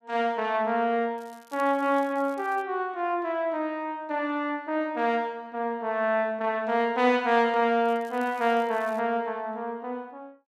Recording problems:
crackle; from 1 to 2.5 s and from 8 to 9 s; loose cable, SNR 28 dB

